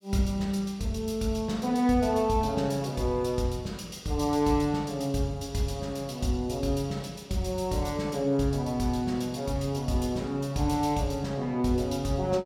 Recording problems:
none

